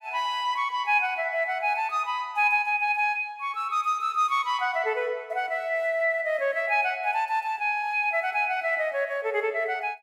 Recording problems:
none

